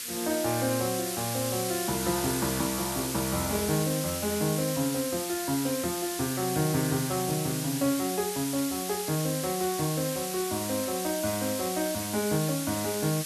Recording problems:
background hiss; SNR 3 dB

